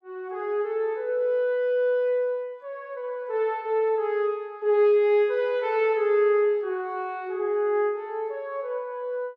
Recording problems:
none

